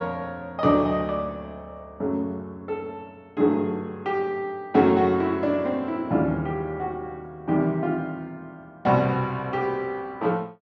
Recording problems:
none

